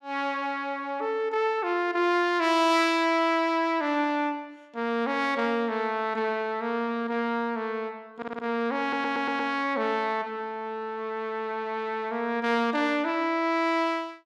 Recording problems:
stutter; at 8 s and at 9 s

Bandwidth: 14.5 kHz